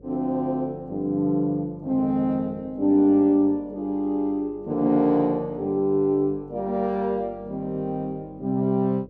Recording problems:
hum; 50 Hz, harmonics up to 550 Hz, SNR 26 dB

